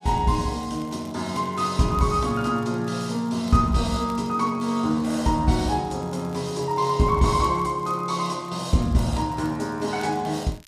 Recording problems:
crackle; vinyl, SNR 28 dB

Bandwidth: 14 kHz